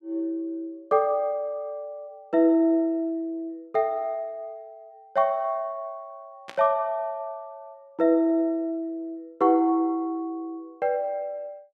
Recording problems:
static burst; at 6.5 s; peak -9 dB vs average level

